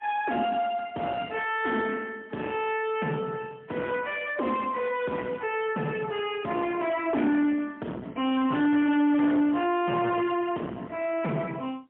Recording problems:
phone line; 170 Hz to 3.2 kHz, AMR-NB, then MP3
distortion; soft clipping, signal-to-distortion ratio 7 dB

